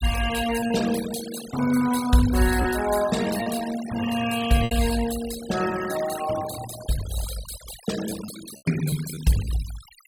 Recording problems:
noise reduction artefacts; signal-to-artefact ratio 11 dB
lost packets; 3% of the sound replaced, filled with repeated pitch periods

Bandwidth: 17 kHz